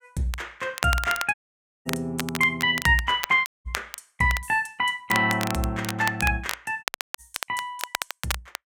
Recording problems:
crackling; vinyl, SNR 9 dB
dropout; at 1.5 s for 0.5 s, at 3.5 s and at 7 s

